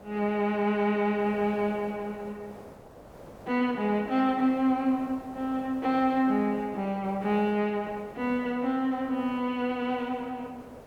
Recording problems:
background hiss; SNR 20 dB

